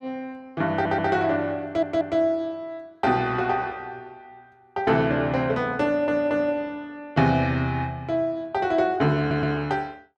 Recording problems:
stutter; 4 times, first at 0.5 s

